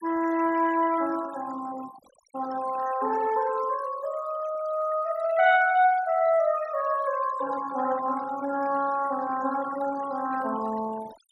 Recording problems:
denoising artefacts; signal-to-artefact ratio 18 dB

